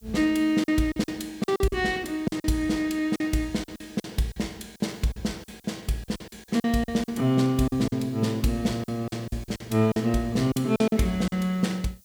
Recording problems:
background hiss; SNR 30 dB
packet loss; 12% of the sound replaced, filled with silence

